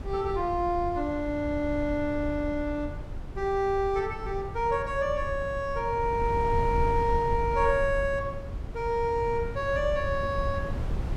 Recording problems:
wind on the microphone; below 120 Hz, SNR 8 dB

